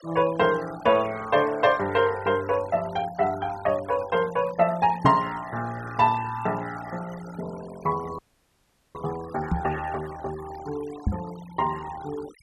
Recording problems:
noise reduction artefacts; signal-to-artefact ratio 19 dB
microphone thump; at 5 s, at 9.5 s and at 11 s; peak +6 dB vs average level
audio freezing; at 8 s for 1 s

